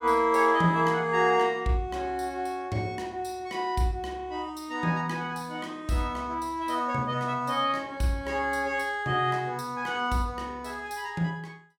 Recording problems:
none

